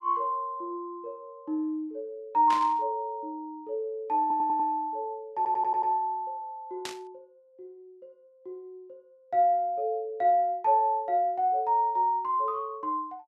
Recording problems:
static burst; at 2.5 s and at 7 s; peak -4 dB vs average level
stutter; at 4 s and at 5.5 s

